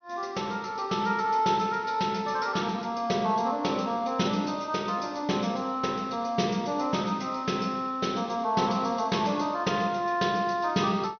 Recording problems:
low-pass filter; nothing above 6.1 kHz

